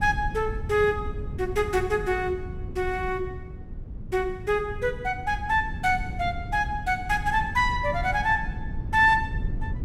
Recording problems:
low-frequency rumble; below 120 Hz, SNR 10 dB

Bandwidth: 16 kHz